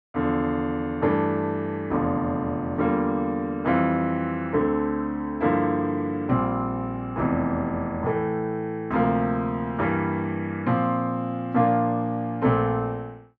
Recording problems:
none

